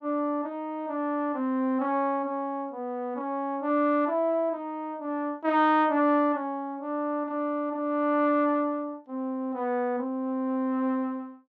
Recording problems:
none

